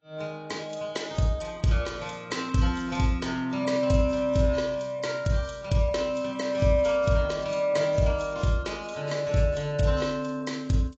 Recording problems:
codec artefacts; AAC, log-spectral distance 3 dB, nothing above 7.3 kHz

